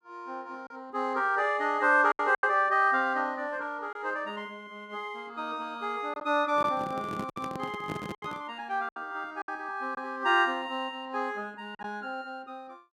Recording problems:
packet loss; 4% of the sound replaced, filled with silence
microphone handling noise; from 6.5 to 8.5 s; peak -3 dB vs average level

